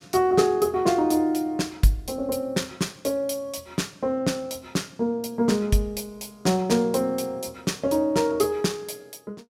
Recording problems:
none

